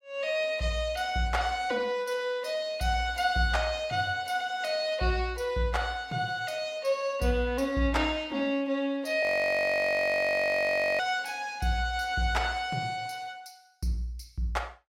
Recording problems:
frozen audio; at 9 s for 2 s

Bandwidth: 16 kHz